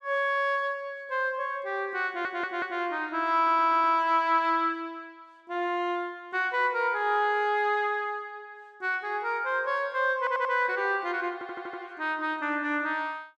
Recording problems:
audio stuttering; 4 times, first at 2 s

